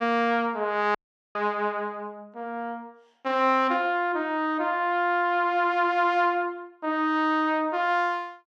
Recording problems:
dropout; at 1 s

